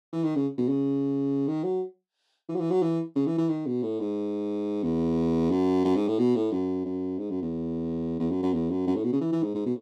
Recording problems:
none

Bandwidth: 14 kHz